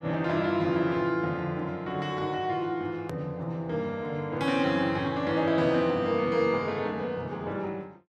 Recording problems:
edit click; at 3 s

